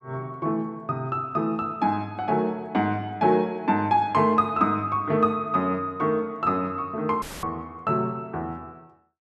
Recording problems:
dropout; at 7 s; filled with static

